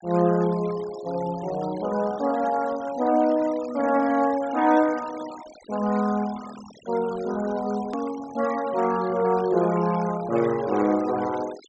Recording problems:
treble cut off; nothing above 8 kHz
denoising artefacts; signal-to-artefact ratio 18 dB
hard cut with a click; at 8 s

